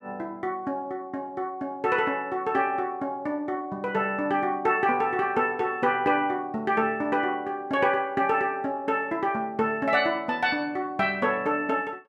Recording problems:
none

